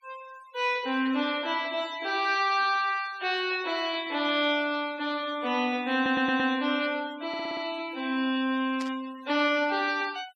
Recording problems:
noise reduction artefacts; signal-to-artefact ratio 21 dB
stutter; at 6 s and at 7.5 s
static burst; at 9 s; peak -10 dB vs average level

